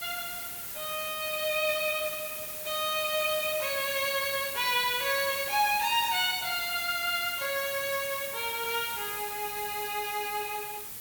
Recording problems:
background hiss; slope -1 dB per octave, SNR 5 dB

